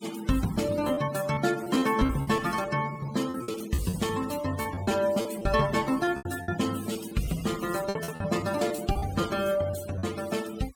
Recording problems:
noise reduction artefacts; signal-to-artefact ratio 14 dB
packet loss; 12% of the sound replaced, filled with repeated pitch periods

